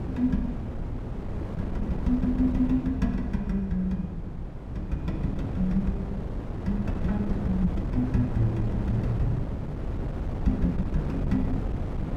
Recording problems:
wind noise; below 230 Hz, SNR 4 dB

